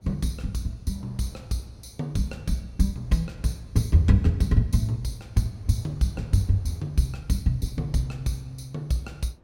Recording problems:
wind noise; below 390 Hz, SNR 25 dB

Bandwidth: 16.5 kHz